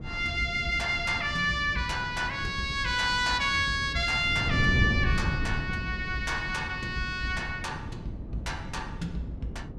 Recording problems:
wind on the microphone; below 190 Hz, SNR 8 dB

